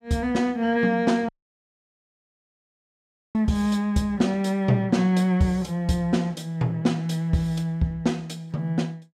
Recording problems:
audio cutting out; at 1.5 s for 2 s

